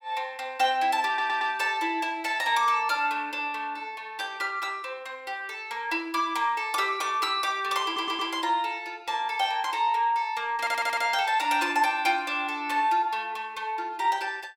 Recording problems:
stutter; at 1 s, at 8 s and at 11 s

